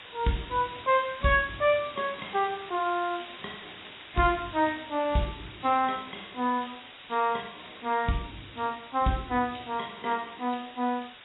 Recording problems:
lossy codec; AAC, log-spectral distance 22 dB, nothing above 3.8 kHz
background hiss; SNR 16 dB
crackling; 4 times, first at 2 s; loose cable, SNR 27 dB

